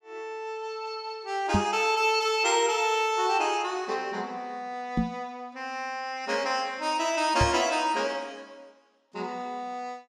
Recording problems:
knock on the microphone; at 1.5 s, at 5 s and at 7.5 s; peak +6 dB vs average level

